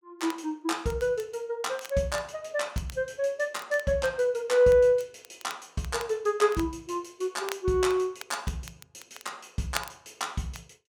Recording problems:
crackle; vinyl, SNR 17 dB

